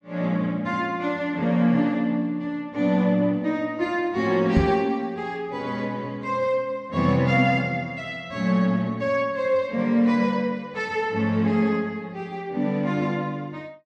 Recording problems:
microphone thump; at 4.5 s; peak +5 dB vs average level

